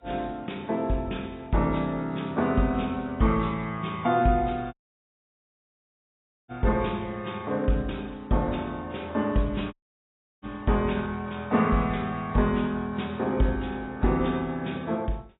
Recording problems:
lossy compression; AAC, log-spectral distance 3 dB, nothing above 3.8 kHz
audio cutting out; at 4.5 s for 2 s and at 9.5 s for 0.5 s

